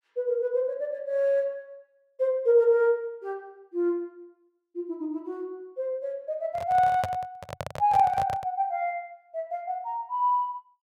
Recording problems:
microphone handling noise; from 6.5 to 8.5 s; peak 0 dB vs average level

